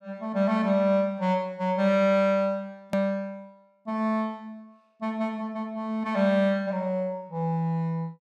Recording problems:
edit click; at 3 s

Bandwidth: 14 kHz